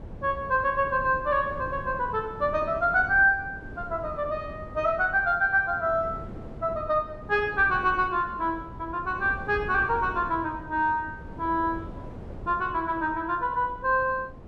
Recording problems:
wind noise; below 360 Hz, SNR 16 dB

